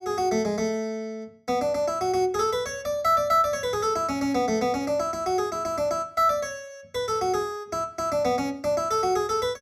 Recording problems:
none

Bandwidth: 16 kHz